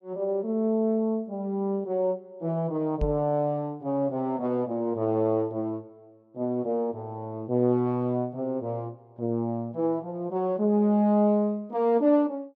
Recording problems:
microphone bump; at 3 s; peak +1 dB vs average level

